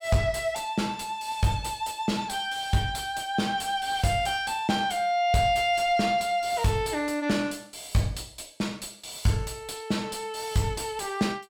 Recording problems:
distorted audio; soft clipping, signal-to-distortion ratio 10 dB

